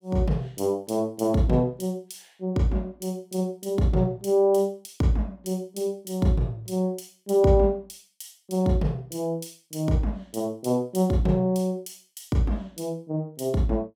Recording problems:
none

